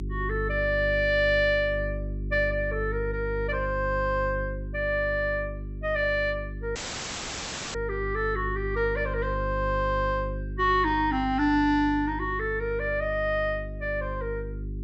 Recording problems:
treble cut off; nothing above 7.9 kHz
electrical hum; 50 Hz, harmonics up to 400 Hz, SNR 8 dB
audio cutting out; at 7 s for 1 s

